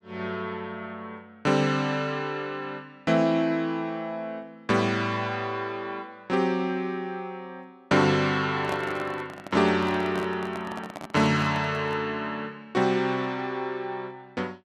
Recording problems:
handling noise; from 8.5 to 12 s; peak -3 dB vs average level

